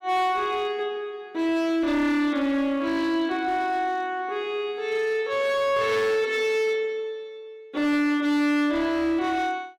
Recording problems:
distorted audio; hard clipping, signal-to-distortion ratio 12 dB

